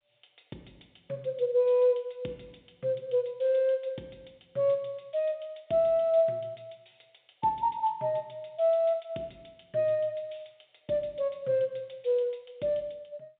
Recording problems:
phone line; 190 Hz to 3.7 kHz, G.711

